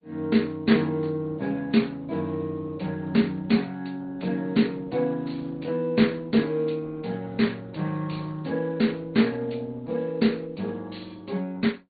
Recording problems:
low-pass filter; nothing above 4.5 kHz
lossy codec; Speex, then Opus, log-spectral distance 3 dB

